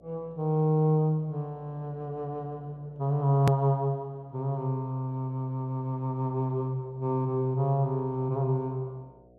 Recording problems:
hum; 60 Hz, harmonics up to 720 Hz, SNR 28 dB
edit click; at 3.5 s

